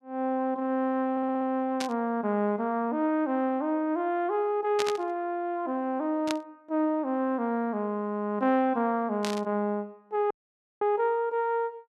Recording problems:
audio stuttering; at 1 s
burst of static; 4 times, first at 2 s; peak +1 dB vs average level
dropout; at 10 s for 0.5 s

